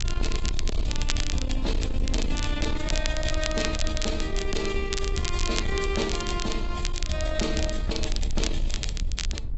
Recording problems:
treble missing; nothing above 7.8 kHz
codec artefacts; AAC, log-spectral distance 2 dB
distortion; soft clipping, signal-to-distortion ratio 10 dB
rumble; below 56 Hz, strongest tone 20 Hz, SNR 2 dB
crackle; vinyl, SNR 5 dB

